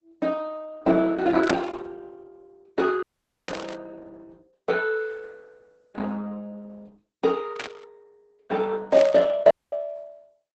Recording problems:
codec artefacts; Opus, log-spectral distance 3 dB, nothing above 7.6 kHz
burst of static; 4 times, first at 1.5 s; peak -5 dB vs average level
dropout; at 3 s and at 9.5 s

